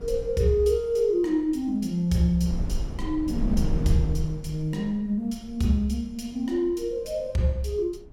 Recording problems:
wind noise; below 78 Hz, SNR 7 dB

